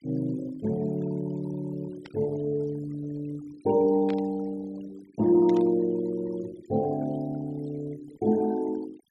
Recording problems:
denoising artefacts; signal-to-artefact ratio 21 dB
static burst; at 2 s, at 4 s and at 5.5 s; peak -11 dB vs average level

